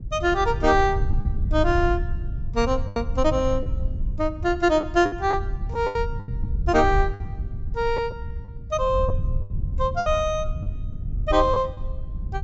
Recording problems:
treble missing; nothing above 8 kHz
rumble; below 84 Hz, SNR 6 dB
lost packets; 7% of the sound replaced, filled with the last packet

